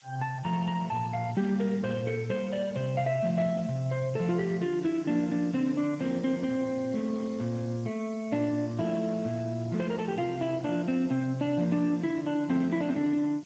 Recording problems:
lossy codec; Speex, log-spectral distance 4 dB
background hiss; slope +3 dB per octave, SNR 26 dB

